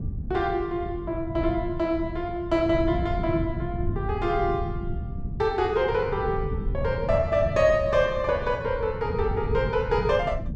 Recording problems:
wind on the microphone; below 140 Hz, SNR 7 dB

